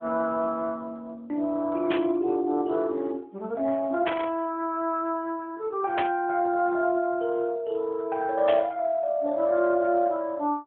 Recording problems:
telephone audio; 190 Hz to 3.6 kHz, AMR-NB
static burst; 4 times, first at 2 s; peak 0 dB vs average level

